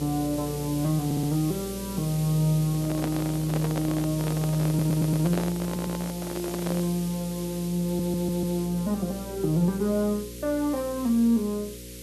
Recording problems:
hum; 60 Hz, harmonics up to 540 Hz, SNR 14 dB
hiss; SNR 13 dB
stutter; 4 times, first at 1 s
handling noise; from 2.5 to 7 s; peak -1 dB vs average level

